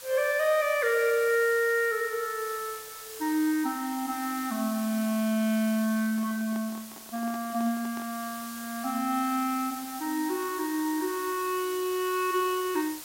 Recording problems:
background hiss; slope 0 dB per octave, SNR 12 dB
handling noise; from 6 to 8 s; peak -12 dB vs average level

